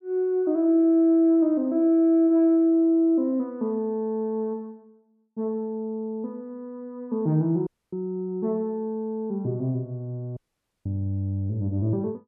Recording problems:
dropout; at 7.5 s and at 10 s

